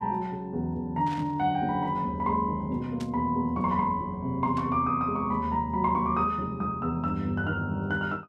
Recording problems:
static burst; at 1 s, at 3 s and at 4.5 s; peak -11 dB vs average level

